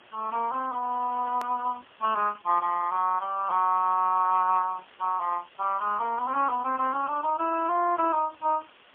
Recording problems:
phone line; 240 Hz to 2.4 kHz, AMR-NB, then MP3
hiss; SNR 27 dB
edit click; at 1.5 s

